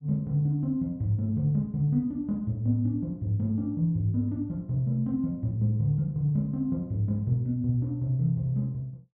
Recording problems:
none

